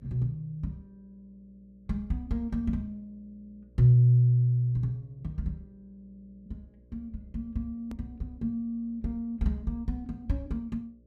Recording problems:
hum; 60 Hz, harmonics up to 600 Hz, SNR 30 dB
edit click; at 8 s

